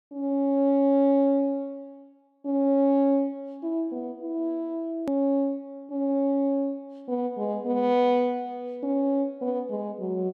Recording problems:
edit click; at 5 s

